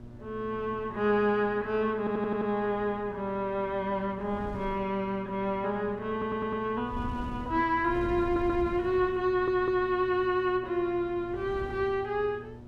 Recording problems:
electrical hum; 60 Hz, harmonics up to 1.3 kHz, SNR 19 dB
wind noise; below 240 Hz, SNR 16 dB
stutter; 4 times, first at 2 s

